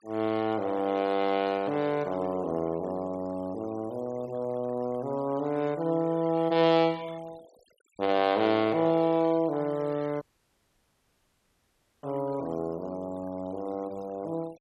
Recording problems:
noise reduction artefacts; signal-to-artefact ratio 23 dB
audio cutting out; at 10 s for 2 s

